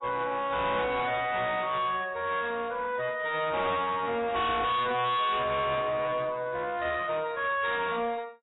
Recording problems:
lossy compression; AAC, log-spectral distance 4 dB, nothing above 3.8 kHz
distorted audio; hard clipping, uneven, signal-to-distortion ratio 5 dB

